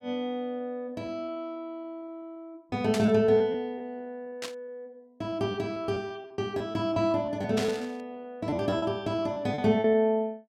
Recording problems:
packet loss; 11% of the sound replaced, filled with repeated pitch periods
burst of static; at 3 s, at 4.5 s and at 7.5 s; peak -1 dB vs average level

